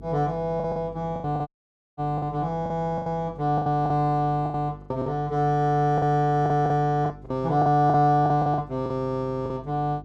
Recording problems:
electrical hum; 50 Hz, harmonics up to 450 Hz, SNR 21 dB
lost packets; 12% of the sound replaced, filled with the last packet
audio cutting out; at 1.5 s for 0.5 s

